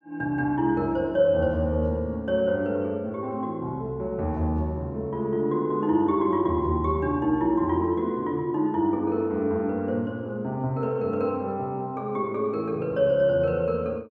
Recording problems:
none

